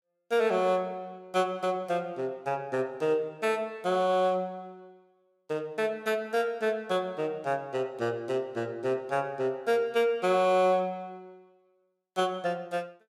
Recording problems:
none

